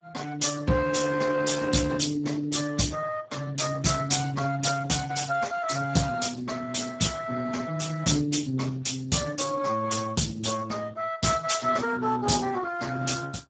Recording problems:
lossy compression; Opus, then Speex, log-spectral distance 6 dB, nothing above 7.6 kHz

